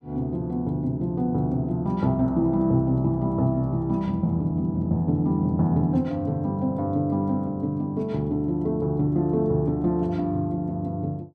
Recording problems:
none

